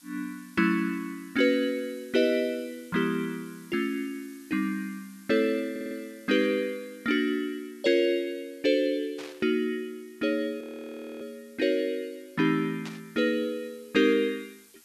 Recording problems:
hiss; slope +3 dB per octave, SNR 27 dB
stutter; at 5.5 s
burst of static; at 9 s and at 13 s; peak -9 dB vs average level
audio freezing; at 11 s for 0.5 s

